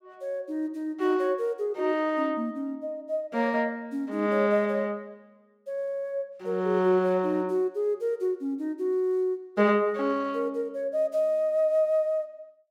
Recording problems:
none

